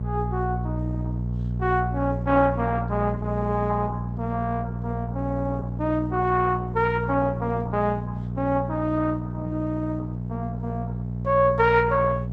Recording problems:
codec artefacts; Opus, log-spectral distance 2 dB
electrical hum; 60 Hz, harmonics up to 480 Hz, SNR 4 dB

